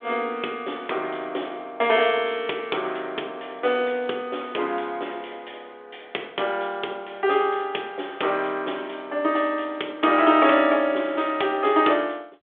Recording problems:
telephone audio; 280 Hz to 3.5 kHz, G.726

